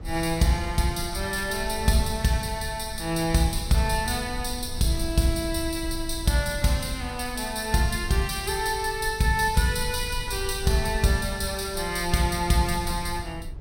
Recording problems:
rumble; below 72 Hz, SNR 12 dB

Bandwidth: 16 kHz